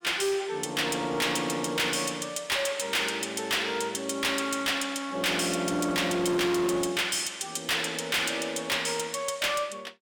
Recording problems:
distorted audio; hard clipping, signal-to-distortion ratio 6 dB

